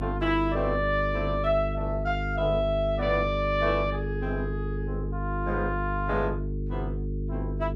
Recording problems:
hum; 50 Hz, harmonics up to 450 Hz, SNR 4 dB

